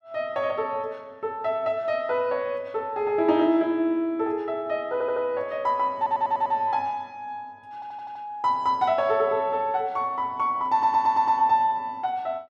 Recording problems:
stutter; 4 times, first at 5 s

